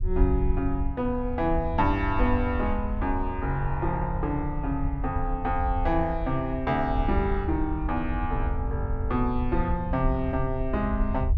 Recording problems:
rumble; below 72 Hz, SNR 4 dB

